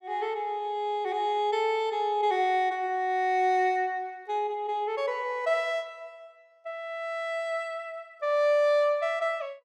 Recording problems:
none

